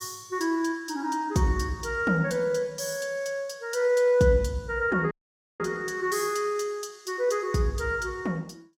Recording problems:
dropout; at 5 s

